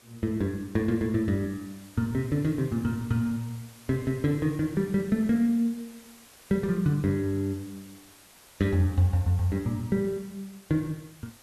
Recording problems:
background hiss; slope -1 dB per octave, SNR 23 dB

